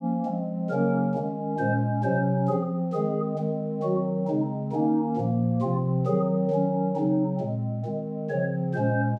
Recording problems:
none

